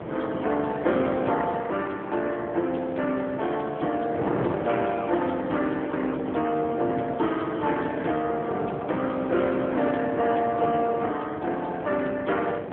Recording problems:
telephone audio; 260 Hz to 3.6 kHz, AMR-NB
wind on the microphone; below 660 Hz, SNR 8 dB

